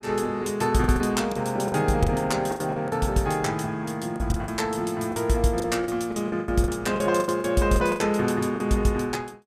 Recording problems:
packet loss; 12% of the sound replaced, filled with the last packet

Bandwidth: 15 kHz